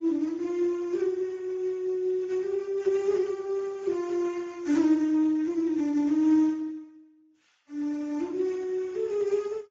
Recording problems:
lossy compression; AAC, then Speex, log-spectral distance 2 dB, nothing above 16.5 kHz

